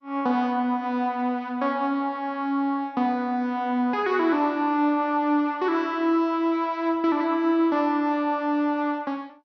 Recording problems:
lossy codec; MP2, log-spectral distance 2 dB

